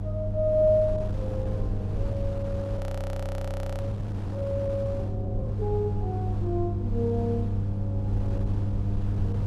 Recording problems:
hum; 50 Hz, harmonics up to 700 Hz, SNR 1 dB
rumble; below 78 Hz, SNR 6 dB
wind noise; below 550 Hz, SNR 12 dB
frozen audio; at 3 s for 1 s

